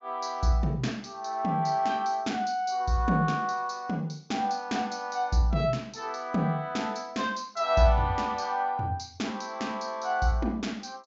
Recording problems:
low-pass filter; nothing above 7.6 kHz

